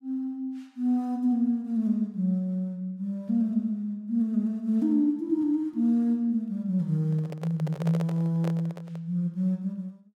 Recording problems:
microphone handling noise; from 7 to 9 s; peak -6 dB vs average level

